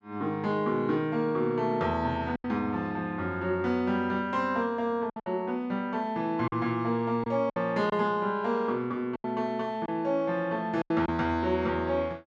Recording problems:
packet loss; 4% of the sound replaced, filled with silence

